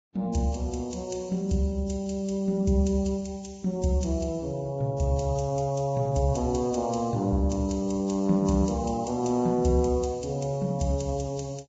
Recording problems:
lossy compression; Vorbis, log-spectral distance 3 dB, nothing above 7.6 kHz

